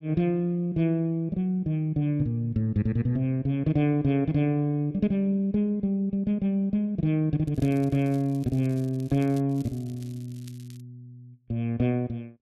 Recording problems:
crackle; from 7.5 to 11 s; loose cable, SNR 27 dB

